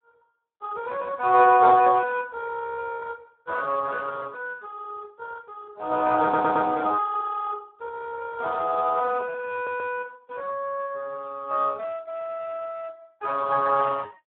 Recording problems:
phone line; 320 Hz to 2.3 kHz, Speex
stutter; at 6 s and at 9.5 s

